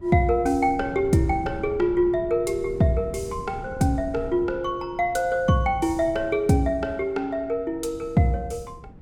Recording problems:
wind on the microphone; below 200 Hz, SNR 17 dB

